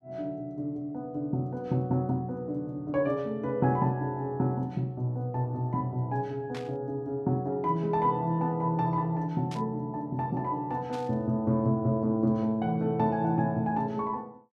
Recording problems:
static burst; at 6.5 s, at 9.5 s and at 11 s; peak -10 dB vs average level

